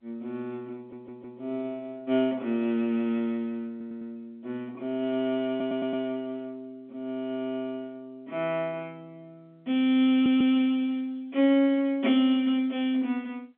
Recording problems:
telephone audio; 190 Hz to 3.6 kHz, G.711
audio stuttering; 4 times, first at 1 s

